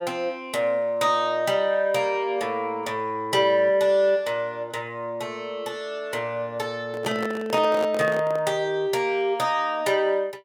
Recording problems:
handling noise; from 7 to 8.5 s; peak -3 dB vs average level

